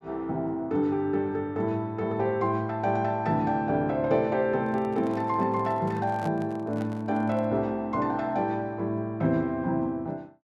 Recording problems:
microphone handling noise; from 4.5 to 7.5 s; peak -8 dB vs average level

